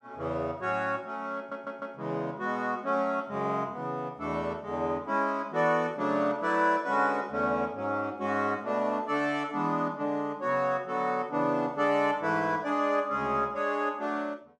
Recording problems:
audio stuttering; at 1.5 s

